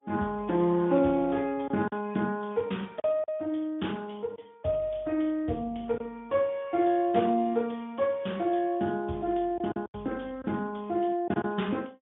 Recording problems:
low-pass filter; nothing above 3.6 kHz
lossy codec; Opus, then Speex, log-spectral distance 3 dB
lost packets; 3% of the sound replaced, filled with silence

